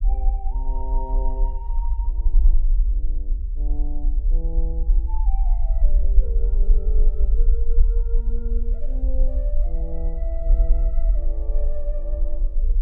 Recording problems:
rumble; below 42 Hz, SNR -15 dB

